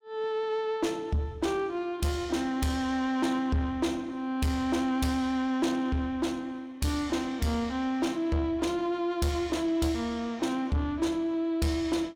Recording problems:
distorted audio; soft clipping, signal-to-distortion ratio 12 dB

